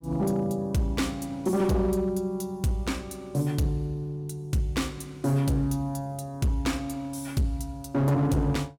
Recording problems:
distortion; hard clipping, signal-to-distortion ratio 11 dB

